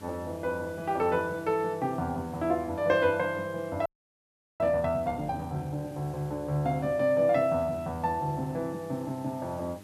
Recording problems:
electrical hum; 50 Hz, harmonics up to 1.7 kHz, SNR 20 dB
background hiss; slope -2 dB per octave, SNR 25 dB
audio freezing; at 4 s for 0.5 s

